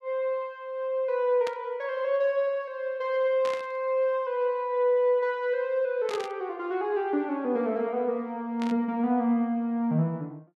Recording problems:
burst of static; 4 times, first at 1.5 s; peak -6 dB vs average level

